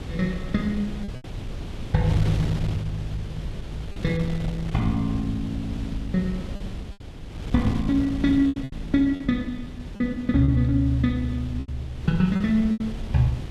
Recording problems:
wind noise; below 180 Hz, SNR 10 dB
packet loss; 5% of the sound replaced, filled with repeated pitch periods

